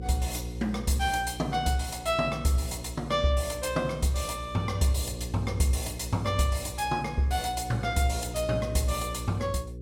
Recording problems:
hum; 60 Hz, harmonics up to 540 Hz, SNR 10 dB

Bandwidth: 16.5 kHz